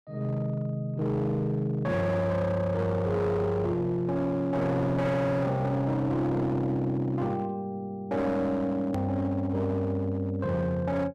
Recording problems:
distorted audio; hard clipping, signal-to-distortion ratio 10 dB
hard cut with a click; at 9 s

